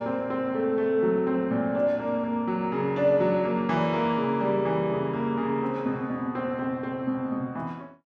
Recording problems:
none

